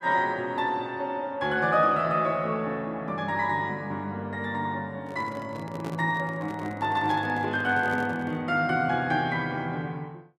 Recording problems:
handling noise; from 5 to 8.5 s; peak -6 dB vs average level

